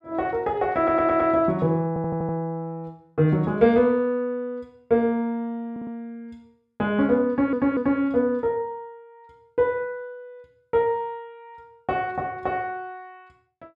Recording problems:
stutter; 4 times, first at 1 s

